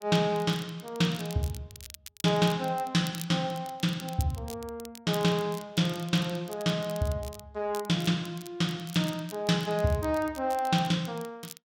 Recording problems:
crackle; vinyl, SNR 18 dB

